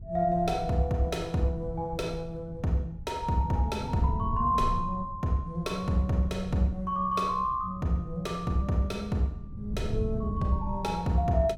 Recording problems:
wind noise; below 130 Hz, SNR 10 dB

